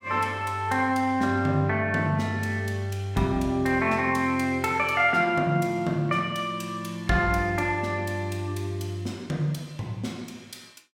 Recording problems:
none

